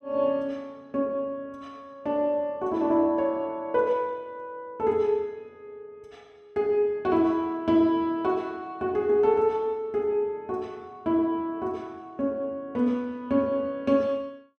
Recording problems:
none

